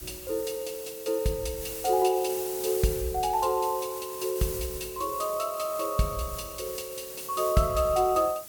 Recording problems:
background hiss; SNR 9 dB

